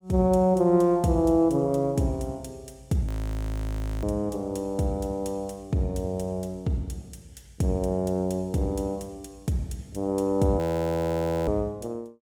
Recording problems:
frozen audio; at 3 s for 1 s and at 11 s for 1 s

